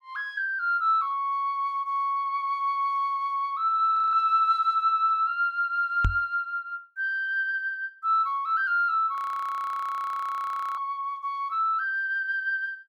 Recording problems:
frozen audio; at 4 s and at 9 s for 1.5 s
microphone thump; at 6 s; peak +3 dB vs average level

